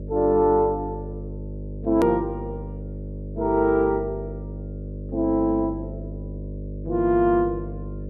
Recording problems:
hum; 50 Hz, harmonics up to 600 Hz, SNR 11 dB
click at an edit; at 2 s

